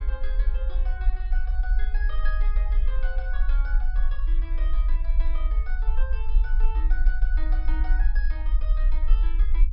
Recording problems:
low-pass filter; nothing above 5.5 kHz
rumble; below 42 Hz, SNR -15 dB

